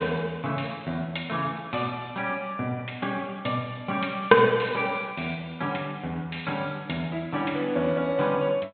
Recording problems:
low-pass filter; nothing above 4 kHz

